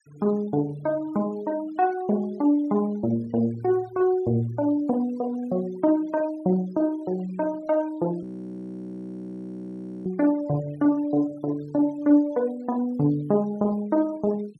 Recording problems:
denoising artefacts; signal-to-artefact ratio 24 dB
audio freezing; at 8 s for 2 s

